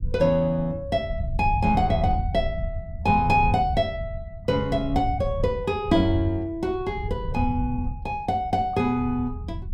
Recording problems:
rumble; below 100 Hz, SNR 8 dB

